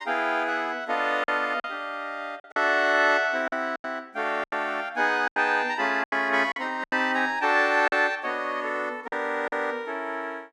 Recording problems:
lost packets; 7% of the sound replaced, filled with silence

